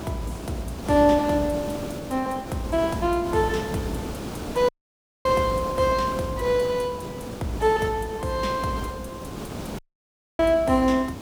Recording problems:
background hiss; SNR 10 dB
audio cutting out; at 4.5 s for 0.5 s and at 10 s for 0.5 s

